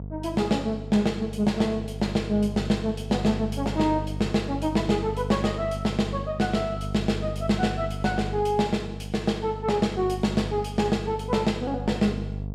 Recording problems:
hum; 50 Hz, harmonics up to 500 Hz, SNR 8 dB

